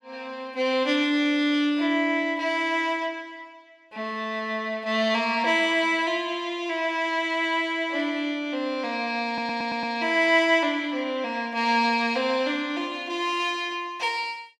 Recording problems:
stutter; at 9.5 s

